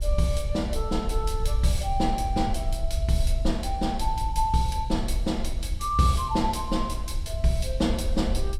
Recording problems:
wind on the microphone; below 62 Hz, SNR 4 dB

